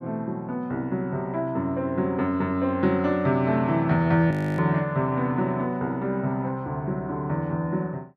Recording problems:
audio freezing; at 4.5 s

